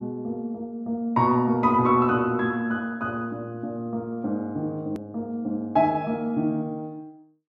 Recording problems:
edit click; at 5 s

